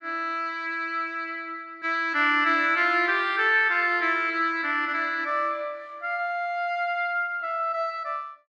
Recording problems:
none

